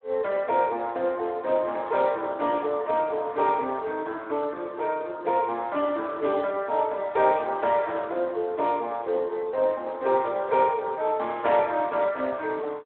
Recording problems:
phone line; 340 Hz to 3.6 kHz, Speex

